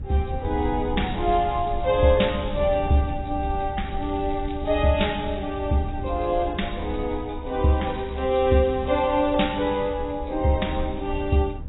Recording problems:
codec artefacts; AAC, log-spectral distance 8 dB, nothing above 3.8 kHz
low-frequency rumble; below 84 Hz, SNR 10 dB
crackle; from 1 to 2.5 s, from 4 to 5 s and from 8 to 10 s; loose cable, SNR 27 dB

